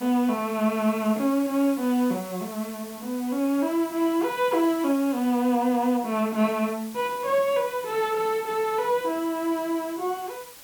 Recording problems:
background hiss; slope 0 dB per octave, SNR 17 dB

